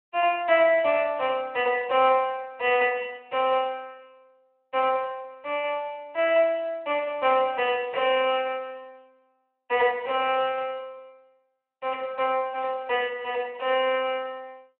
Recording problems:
telephone audio; 370 Hz to 3.1 kHz, Speex

